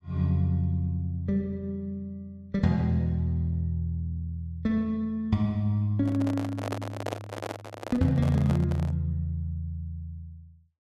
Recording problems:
microphone handling noise; from 6 to 9 s; peak -1 dB vs average level

